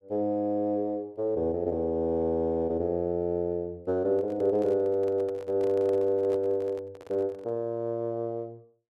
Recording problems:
microphone handling noise; from 4 to 7.5 s; peak -11 dB vs average level

